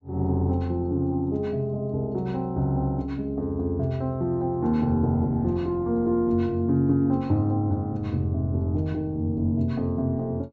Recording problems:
treble missing; nothing above 8 kHz

